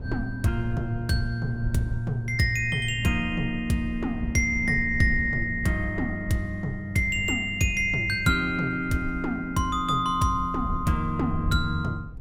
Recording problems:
low-frequency rumble; below 98 Hz, SNR 12 dB

